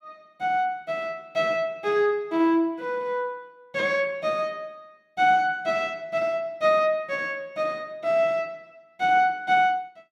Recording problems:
none

